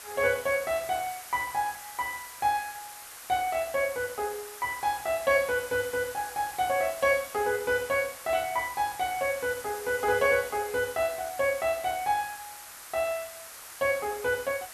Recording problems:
background hiss; SNR 13 dB

